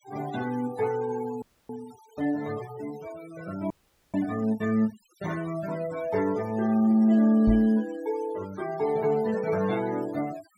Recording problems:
noise reduction artefacts; signal-to-artefact ratio 18 dB
frozen audio; at 1.5 s and at 3.5 s
knock on the microphone; at 7.5 s; peak +1 dB vs average level

